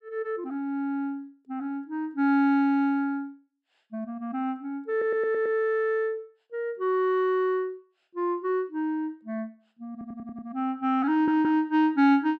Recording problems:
stutter; at 5 s, at 10 s and at 11 s

